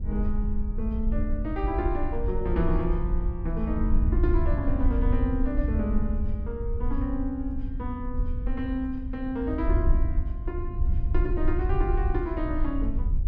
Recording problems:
wind on the microphone; below 66 Hz, SNR -2 dB

